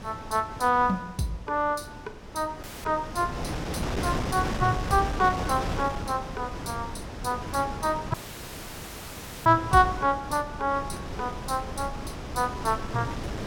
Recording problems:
wind noise; below 780 Hz, SNR 7 dB
dropout; at 2.5 s and at 8 s for 1.5 s

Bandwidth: 17 kHz